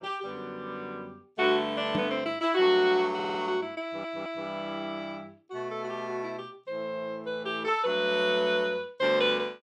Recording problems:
microphone thump; at 2 s; peak +1 dB vs average level
audio stuttering; at 3 s and at 4 s

